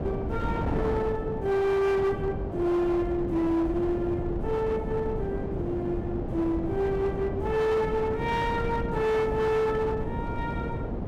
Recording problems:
distortion; hard clipping, signal-to-distortion ratio 11 dB
wind noise; below 400 Hz, SNR 5 dB

